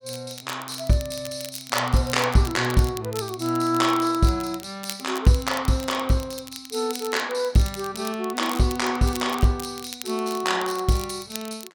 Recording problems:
crackle; vinyl, SNR 14 dB

